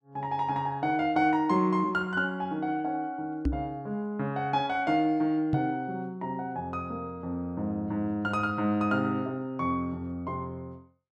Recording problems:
microphone thump; at 3.5 s and at 5.5 s; peak +5 dB vs average level

